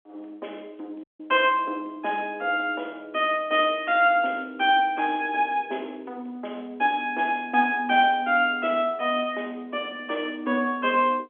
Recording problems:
phone line; 220 Hz to 3.4 kHz, G.711
dropout; at 1 s

